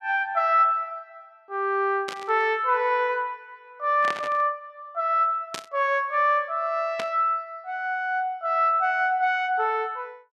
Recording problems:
burst of static; 4 times, first at 2 s; peak -4 dB vs average level

